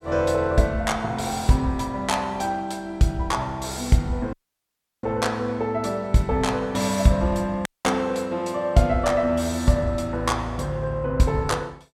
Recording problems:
audio cutting out; at 4.5 s for 0.5 s and at 7.5 s

